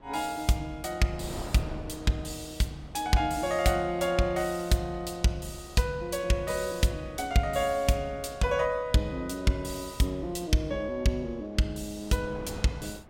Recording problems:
wind on the microphone; below 630 Hz, SNR 18 dB

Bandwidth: 16.5 kHz